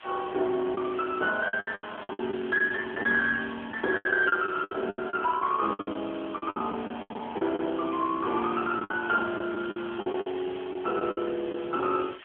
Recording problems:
phone line; 280 Hz to 3.1 kHz, AMR-NB
background hiss; SNR 18 dB
packet loss; 14% of the sound replaced, filled with the last packet

